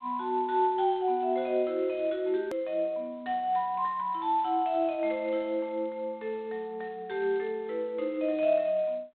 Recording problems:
telephone audio; 260 Hz to 3.9 kHz, G.726
hard cut with a click; at 2.5 s

